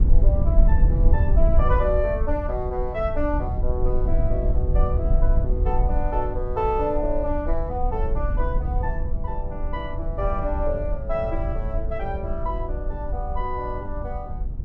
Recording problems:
rumble; below 64 Hz, SNR -3 dB

